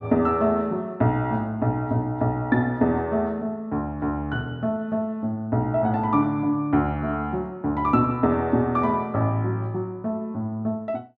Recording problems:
none

